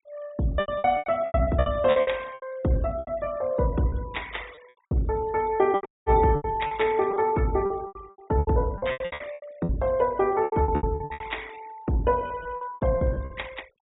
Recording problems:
treble missing; nothing above 4 kHz
noise reduction artefacts; signal-to-artefact ratio 23 dB
lost packets; 19% of the sound replaced, filled with repeated pitch periods
dropout; at 6 s

